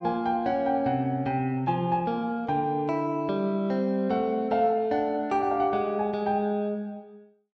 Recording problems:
none

